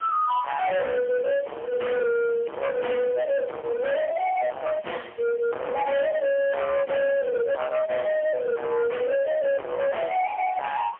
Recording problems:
telephone audio; 860 Hz to 3.2 kHz, AMR-NB, then MP3
distortion; hard clipping, signal-to-distortion ratio 6 dB
background hiss; SNR 27 dB

